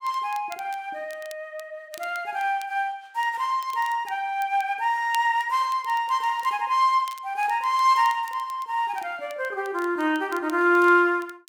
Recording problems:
crackling; vinyl, SNR 24 dB

